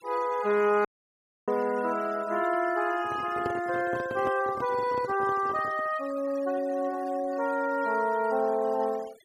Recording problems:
noise reduction artefacts; signal-to-artefact ratio 20 dB
dropout; at 1 s for 0.5 s
microphone handling noise; from 3 to 6 s; peak -3 dB vs average level

